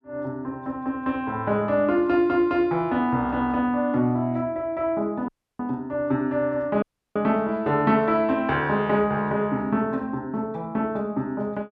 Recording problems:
audio cutting out; at 5.5 s and at 7 s

